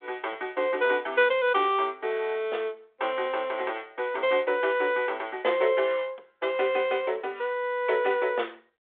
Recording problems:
telephone audio; 340 Hz to 3.6 kHz, G.726

